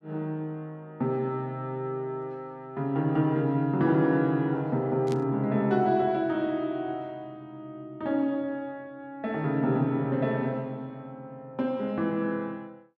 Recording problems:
burst of static; at 5 s; peak -11 dB vs average level

